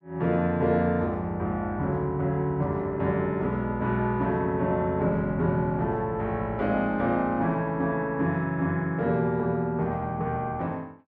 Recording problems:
none

